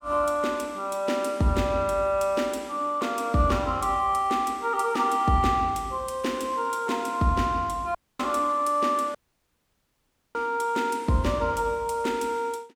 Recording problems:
dropout; at 8 s and at 9 s for 1 s

